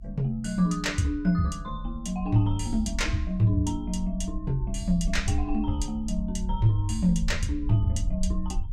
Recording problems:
rumble; below 58 Hz, SNR 8 dB

